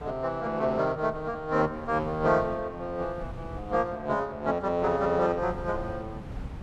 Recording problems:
wind on the microphone; below 200 Hz, SNR 15 dB

